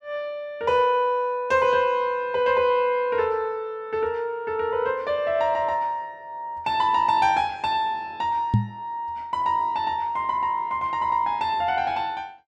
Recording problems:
knock on the microphone; at 8.5 s; peak +7 dB vs average level

